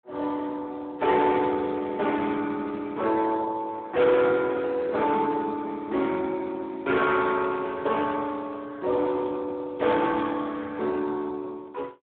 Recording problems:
telephone audio; 240 Hz to 2.2 kHz, Speex
distorted audio; hard clipping, signal-to-distortion ratio 11 dB

